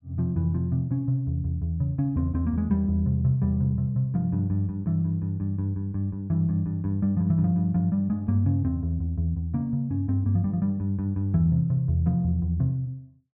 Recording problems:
treble missing; nothing above 5.1 kHz

